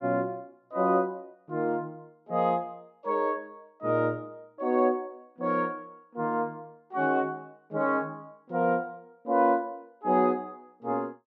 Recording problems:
none

